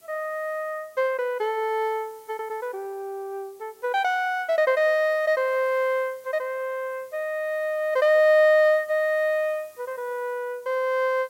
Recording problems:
background hiss; SNR 29 dB

